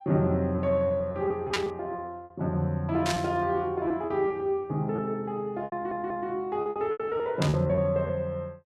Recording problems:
lost packets; 11% of the sound replaced, filled with repeated pitch periods
static burst; at 1.5 s, at 3 s and at 7.5 s; peak +5 dB vs average level
stutter; at 5.5 s

